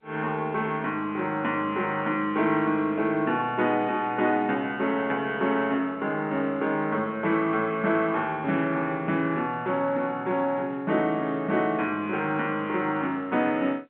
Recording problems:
phone line; 170 Hz to 3.4 kHz, G.711

